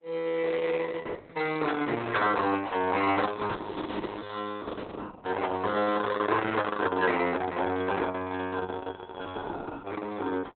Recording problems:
lossy compression; Opus, log-spectral distance 5 dB, nothing above 4 kHz

